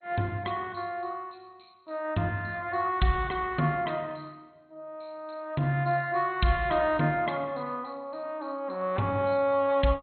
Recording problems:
lossy codec; MP2, log-spectral distance 5 dB, nothing above 4.2 kHz

